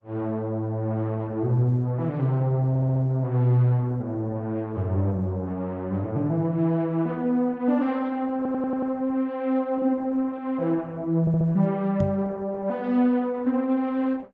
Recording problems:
lossy compression; Opus, log-spectral distance 2 dB
audio stuttering; at 2.5 s, at 8.5 s and at 11 s
microphone thump; at 12 s; peak +3 dB vs average level

